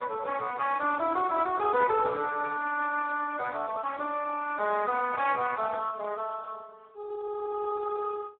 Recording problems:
phone line; 280 Hz to 3.6 kHz, Speex

